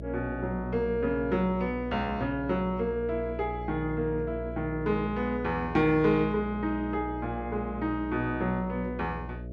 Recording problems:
hum; 60 Hz, harmonics up to 660 Hz, SNR 10 dB

